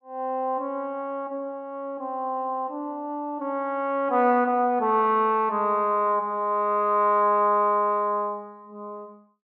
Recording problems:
none

